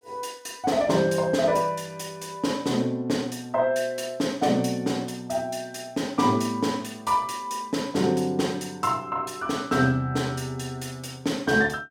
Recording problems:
none

